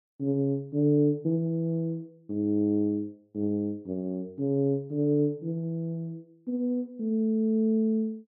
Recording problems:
none

